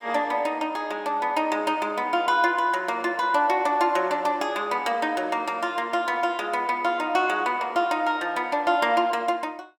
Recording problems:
none

